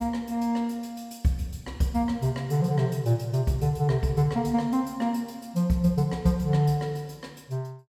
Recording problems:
none

